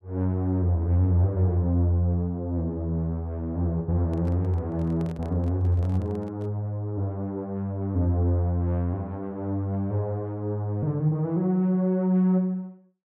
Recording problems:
microphone handling noise; from 4 to 6.5 s; peak -13 dB vs average level

